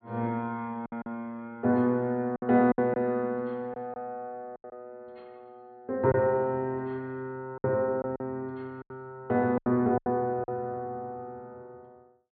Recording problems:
treble cut off; nothing above 4.4 kHz
lost packets; 7% of the sound replaced, filled with silence

